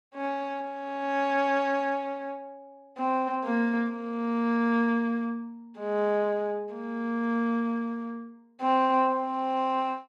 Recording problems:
none

